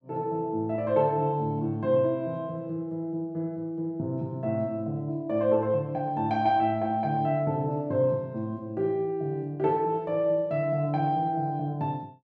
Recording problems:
none

